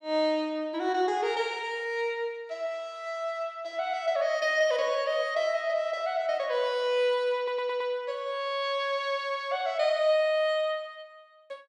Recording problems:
stutter; at 7.5 s

